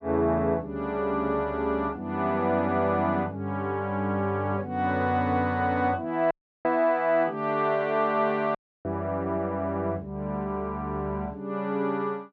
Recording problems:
dropout; at 6.5 s and at 8.5 s

